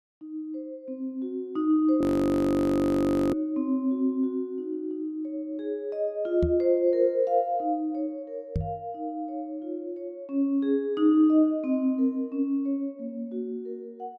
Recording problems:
audio freezing; at 2 s for 1.5 s
microphone thump; at 6.5 s and at 8.5 s; peak +2 dB vs average level

